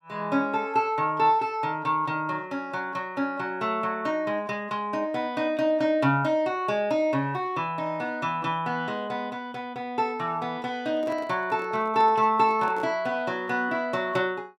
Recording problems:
handling noise; from 11 to 13 s; peak -10 dB vs average level

